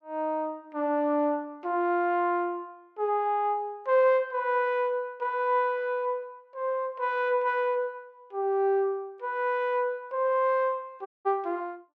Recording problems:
audio cutting out; at 11 s

